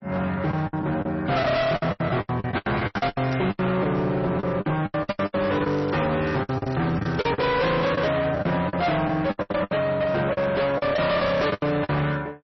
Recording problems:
codec artefacts; MP3, log-spectral distance 3 dB, nothing above 5.7 kHz
distorted audio; hard clipping, signal-to-distortion ratio 6 dB
lost packets; 17% of the sound replaced, filled with the last packet
crackle; at 2.5 s and from 5 to 7 s; loose cable, SNR 23 dB

